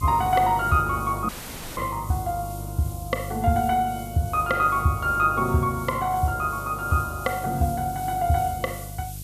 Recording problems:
electrical hum; 50 Hz, harmonics up to 500 Hz, SNR 13 dB
background hiss; SNR 17 dB
audio cutting out; at 1.5 s

